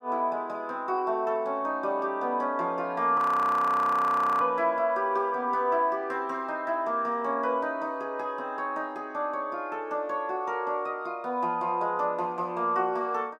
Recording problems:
audio freezing; at 3 s for 1 s

